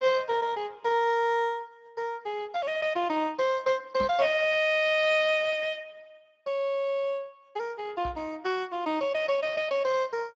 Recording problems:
lossy codec; Speex, log-spectral distance 3 dB
microphone thump; at 4 s and at 8 s; peak -5 dB vs average level

